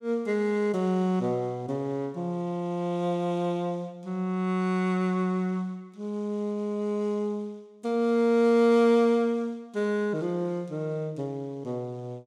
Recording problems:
none

